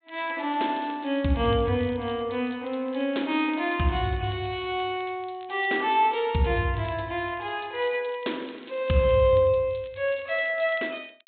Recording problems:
treble missing; nothing above 4 kHz
crackle; vinyl, SNR 27 dB

